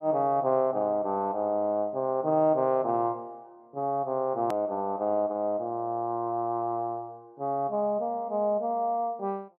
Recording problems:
hard cut with a click; at 4.5 s

